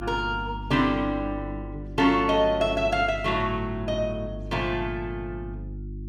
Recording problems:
hum; 50 Hz, harmonics up to 350 Hz, SNR 11 dB

